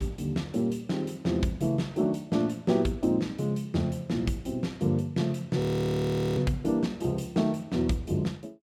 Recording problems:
audio freezing; at 5.5 s for 1 s

